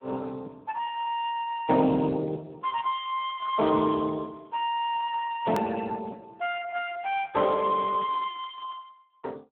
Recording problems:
telephone audio; 170 Hz to 3.7 kHz, Speex
edit click; at 5.5 s

